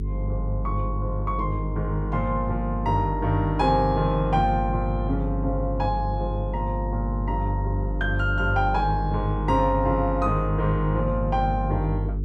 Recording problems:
hum; 50 Hz, harmonics up to 450 Hz, SNR 3 dB

